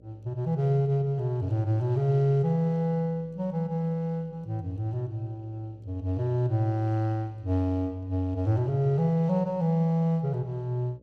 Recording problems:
electrical hum; 60 Hz, harmonics up to 600 Hz, SNR 29 dB

